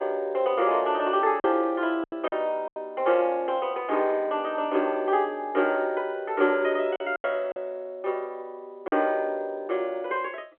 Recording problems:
phone line; 300 Hz to 3.3 kHz, G.711
lost packets; 4% of the sound replaced, filled with silence

